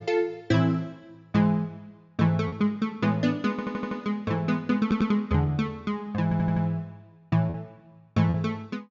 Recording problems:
treble missing; nothing above 7.3 kHz
lost packets; 1.8% of the sound replaced, filled with repeated pitch periods
stutter; at 3.5 s, at 5 s and at 6 s

